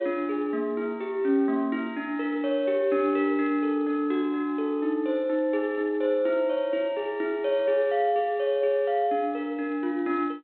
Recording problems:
phone line; 190 Hz to 3.9 kHz, G.726

